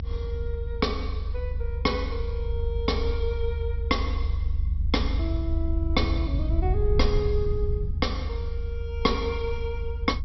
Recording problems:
treble cut off; nothing above 5.6 kHz
low-frequency rumble; below 76 Hz, SNR -1 dB

